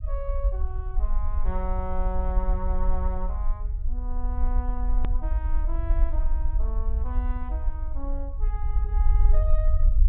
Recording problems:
low-pass filter; nothing above 4 kHz
low-frequency rumble; below 50 Hz, strongest tone 20 Hz, SNR -10 dB
edit click; at 5 s

